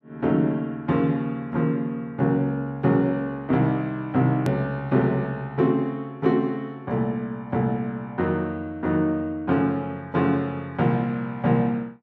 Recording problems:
click at an edit; at 4.5 s

